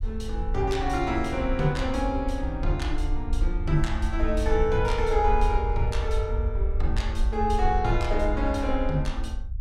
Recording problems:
rumble; below 62 Hz, SNR 2 dB

